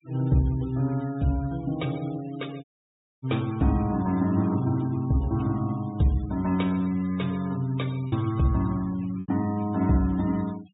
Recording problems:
treble cut off; nothing above 4 kHz
denoising artefacts; signal-to-artefact ratio 22 dB
packet loss; 1.1% of the sound replaced, filled with repeated pitch periods
audio cutting out; at 2.5 s for 0.5 s

